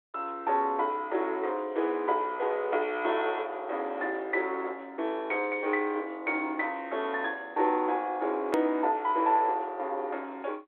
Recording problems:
phone line; 280 Hz to 3.6 kHz, G.726
click at an edit; at 8.5 s

